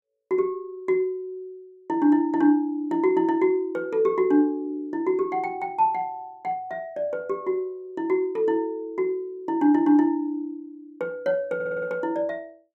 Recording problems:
stutter; at 12 s

